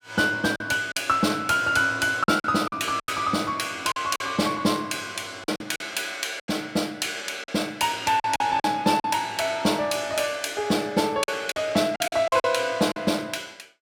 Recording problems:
packet loss; 8% of the sound replaced, filled with silence

